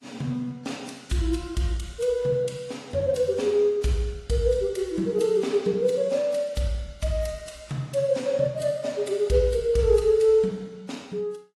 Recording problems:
lossy compression; AAC, then AAC, log-spectral distance 3 dB, nothing above 11.6 kHz

